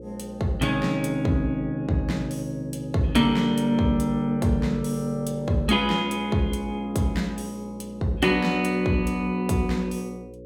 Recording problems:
hum; 60 Hz, harmonics up to 540 Hz, SNR 17 dB

